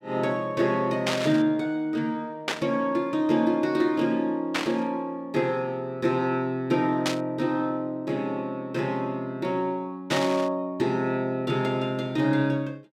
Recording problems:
burst of static; 5 times, first at 1 s; peak +4 dB vs average level

